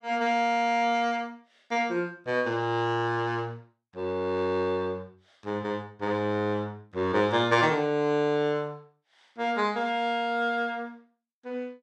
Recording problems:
none

